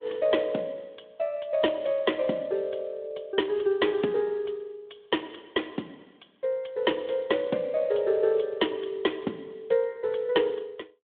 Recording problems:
telephone audio; 220 Hz to 3.6 kHz, Speex

